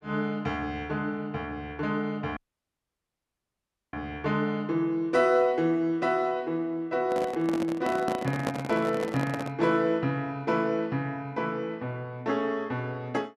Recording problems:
dropout; at 2.5 s for 1.5 s
microphone handling noise; from 7 to 9.5 s; peak +3 dB vs average level

